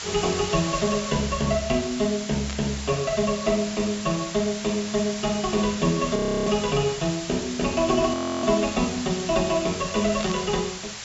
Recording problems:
low-pass filter; nothing above 8 kHz
background hiss; slope +2 dB per octave, SNR 9 dB
static burst; at 2.5 s and at 10 s; peak -7 dB vs average level
audio freezing; at 6 s and at 8 s

